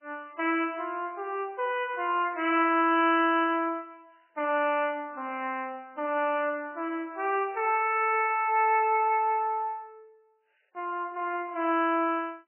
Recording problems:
lossy compression; MP3, log-spectral distance 2 dB, nothing above 2.7 kHz

